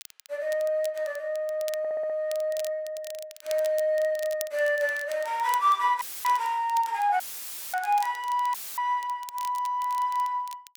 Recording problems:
crackle; vinyl, SNR 18 dB
audio stuttering; at 2 s
dropout; at 6 s, at 7 s for 0.5 s and at 8.5 s; filled with static

